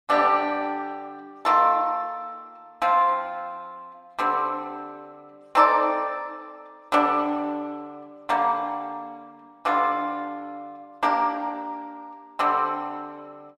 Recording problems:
none

